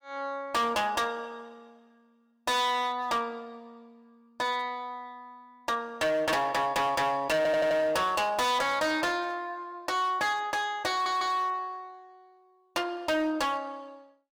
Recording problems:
distortion; hard clipping, signal-to-distortion ratio 8 dB
stutter; at 7.5 s and at 11 s

